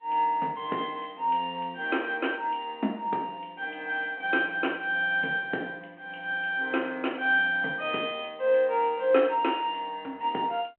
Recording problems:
phone line; 220 Hz to 3.5 kHz, G.726

